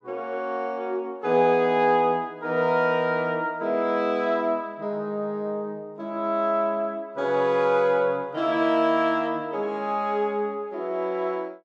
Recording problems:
none

